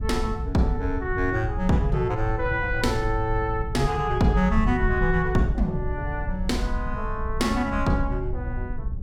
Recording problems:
wind noise; below 84 Hz, SNR 6 dB

